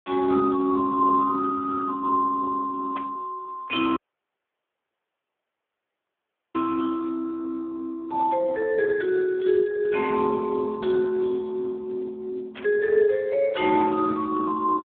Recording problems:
telephone audio; 320 Hz to 2.5 kHz, Speex
static burst; at 3 s and at 13 s; peak -10 dB vs average level
dropout; at 4 s for 2.5 s

